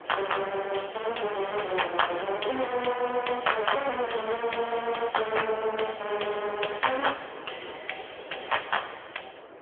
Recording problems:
telephone audio; 300 Hz to 3.3 kHz, AMR-NB
wind noise; below 1.1 kHz, SNR 13 dB

